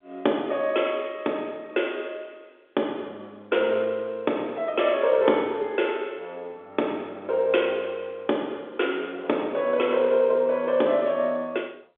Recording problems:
phone line; 260 Hz to 3.5 kHz, G.711

